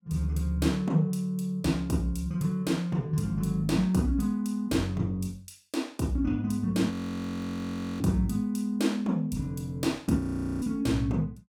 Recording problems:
frozen audio; at 7 s for 1 s and at 10 s

